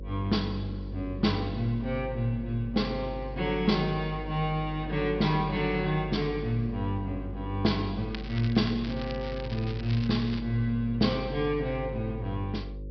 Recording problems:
treble cut off; nothing above 5.5 kHz
hum; 50 Hz, harmonics up to 550 Hz, SNR 10 dB
crackling; from 8 to 10 s; loose cable, SNR 15 dB

